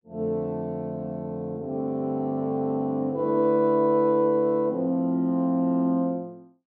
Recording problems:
none

